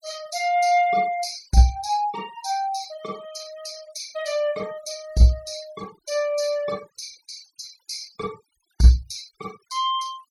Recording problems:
noise reduction artefacts; signal-to-artefact ratio 22 dB

